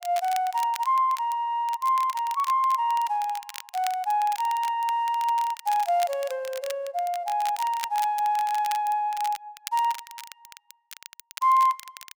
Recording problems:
crackle; vinyl, SNR 16 dB

